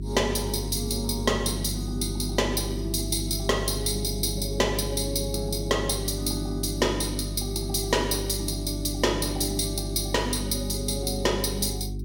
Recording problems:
hum; 50 Hz, harmonics up to 400 Hz, SNR 6 dB

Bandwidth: 17 kHz